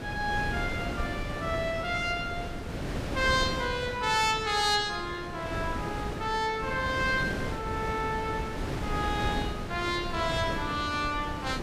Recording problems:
wind noise; below 570 Hz, SNR 5 dB

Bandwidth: 15.5 kHz